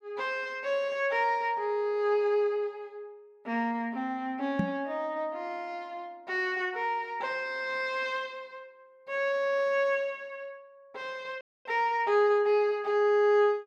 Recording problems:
microphone thump; at 4.5 s; peak +4 dB vs average level
frozen audio; at 11 s

